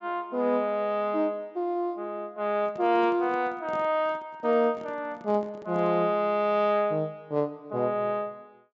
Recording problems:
treble cut off; nothing above 8 kHz
handling noise; from 2.5 to 6 s; peak -11 dB vs average level

